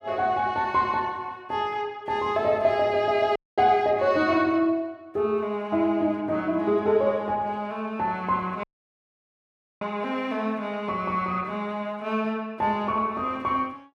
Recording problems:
dropout; at 3.5 s and at 8.5 s for 1 s

